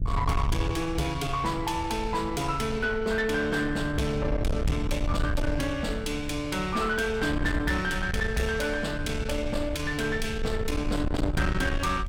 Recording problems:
distorted audio; soft clipping, signal-to-distortion ratio 8 dB
rumble; below 100 Hz, SNR 6 dB

